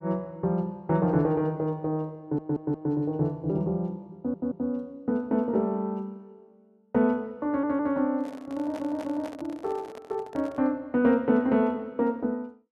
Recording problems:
stutter; 4 times, first at 2 s
handling noise; from 8 to 11 s; peak -9 dB vs average level

